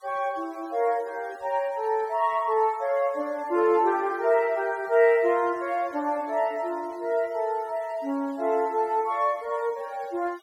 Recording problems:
noise reduction artefacts; signal-to-artefact ratio 26 dB

